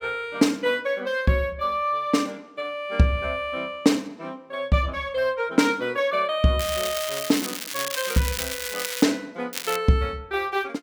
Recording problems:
crackling; from 6.5 to 9 s and at 9.5 s; loose cable, SNR 6 dB

